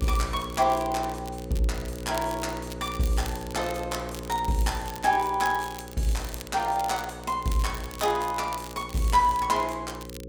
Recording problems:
hum; 60 Hz, harmonics up to 540 Hz, SNR 12 dB
crackle; vinyl, SNR 16 dB

